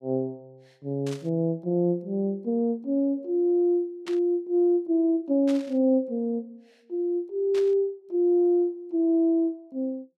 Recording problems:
burst of static; 4 times, first at 1 s; peak -11 dB vs average level

